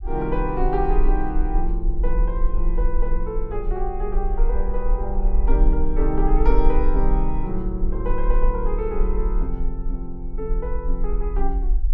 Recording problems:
low-frequency rumble; below 38 Hz, strongest tone 18 Hz, SNR -2 dB

